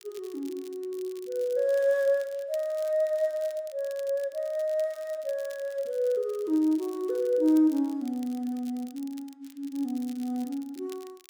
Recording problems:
crackling; vinyl, SNR 23 dB

